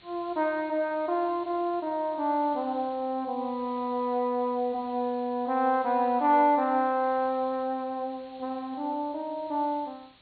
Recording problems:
treble missing; nothing above 4.4 kHz
background hiss; SNR 27 dB

